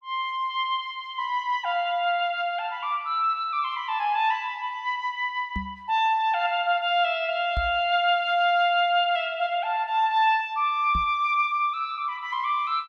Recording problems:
microphone bump; at 5.5 s, at 7.5 s and at 11 s; peak -1 dB vs average level

